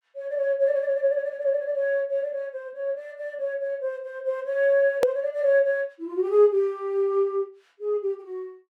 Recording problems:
edit click; at 5 s

